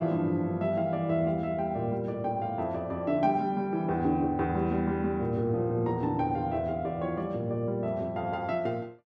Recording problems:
none

